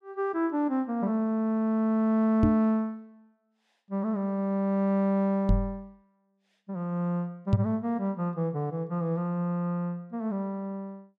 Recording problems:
microphone thump; at 2.5 s, at 5.5 s and at 7.5 s; peak +9 dB vs average level

